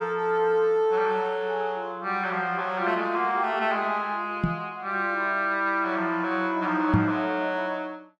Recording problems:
microphone bump; at 4.5 s and at 7 s; peak +7 dB vs average level

